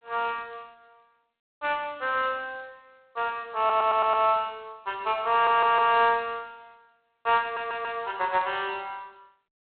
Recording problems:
telephone audio; 300 Hz to 3.9 kHz, G.726
audio stuttering; at 3.5 s, at 5.5 s and at 7.5 s

